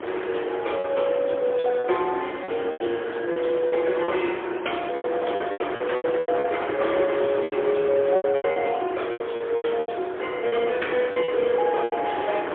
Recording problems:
phone line; 280 Hz to 3.4 kHz, AMR-NB, then MP3
wind noise; below 1.4 kHz, SNR 8 dB
packet loss; 13% of the sound replaced, filled with repeated pitch periods

